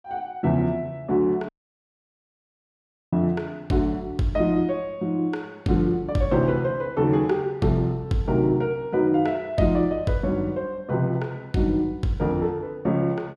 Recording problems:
audio cutting out; at 1.5 s for 1.5 s

